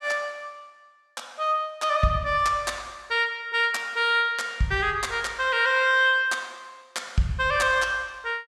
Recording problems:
none

